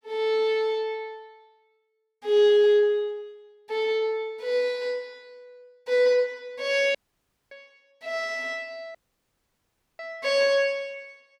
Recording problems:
dropout; at 7 s for 0.5 s and at 9 s for 1 s

